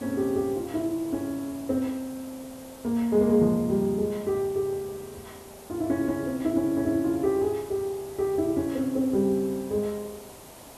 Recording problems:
hiss; SNR 19 dB

